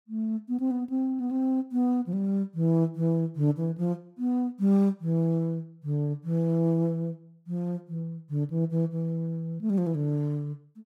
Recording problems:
none

